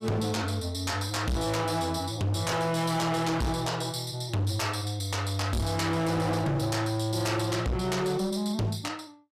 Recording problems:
distortion; hard clipping, signal-to-distortion ratio 6 dB

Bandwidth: 14.5 kHz